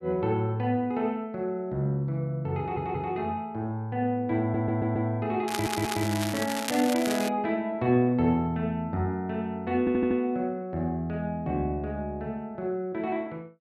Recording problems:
stutter; 4 times, first at 2.5 s
crackling; from 5.5 to 7.5 s; loose cable, SNR 6 dB

